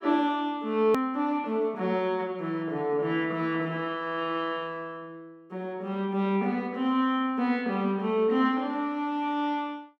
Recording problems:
edit click; at 1 s

